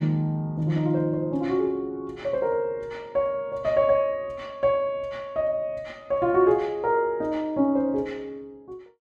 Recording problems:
none

